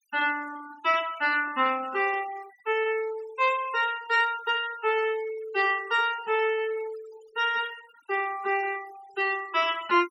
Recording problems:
noise reduction artefacts; signal-to-artefact ratio 19 dB

